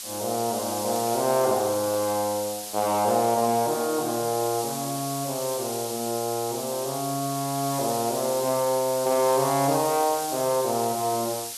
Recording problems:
hiss; slope +3 dB per octave, SNR 7 dB

